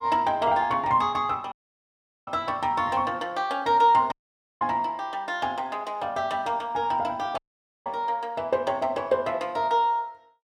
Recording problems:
audio cutting out; at 1.5 s for 1 s, at 4 s and at 7.5 s

